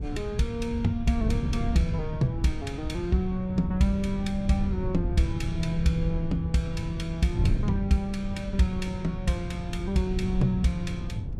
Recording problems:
wind noise; below 130 Hz, SNR 4 dB

